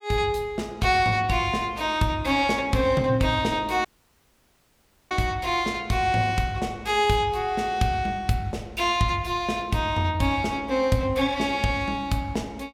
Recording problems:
dropout; at 4 s for 1.5 s

